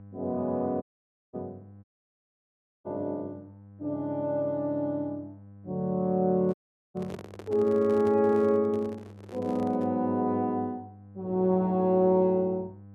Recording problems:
mains hum; 50 Hz, harmonics up to 800 Hz, SNR 22 dB
dropout; at 1 s for 0.5 s, at 2 s for 1 s and at 6.5 s
handling noise; from 6.5 to 10 s; peak -8 dB vs average level

